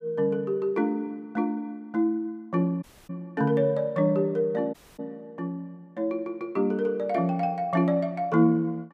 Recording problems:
dropout; at 3 s and at 4.5 s

